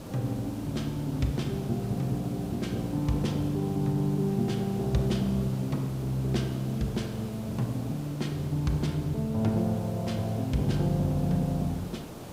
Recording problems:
hiss; SNR 12 dB

